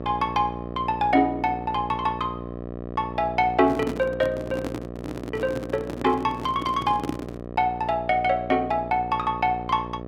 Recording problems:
hum; 60 Hz, harmonics up to 1.3 kHz, SNR 10 dB
microphone handling noise; from 3.5 to 7.5 s; peak +1 dB vs average level

